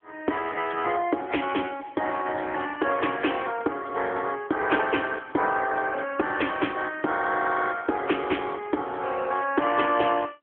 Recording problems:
phone line; 260 Hz to 3.3 kHz, AMR-NB

